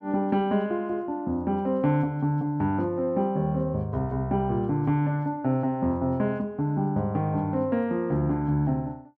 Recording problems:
none

